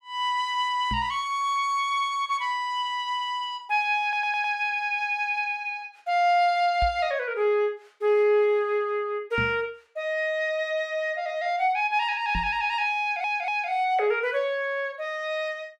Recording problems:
microphone thump; 4 times, first at 1 s; peak -2 dB vs average level
audio stuttering; at 4 s and at 13 s

